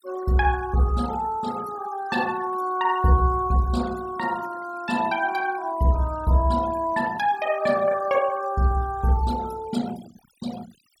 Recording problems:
denoising artefacts; signal-to-artefact ratio 20 dB

